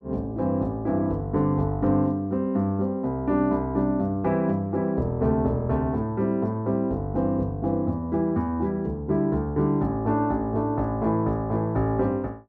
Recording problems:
none

